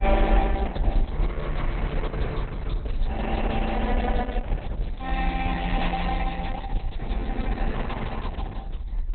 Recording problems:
codec artefacts; Opus, log-spectral distance 2 dB, nothing above 4 kHz
low-frequency rumble; below 48 Hz, strongest tone 34 Hz, SNR 0 dB

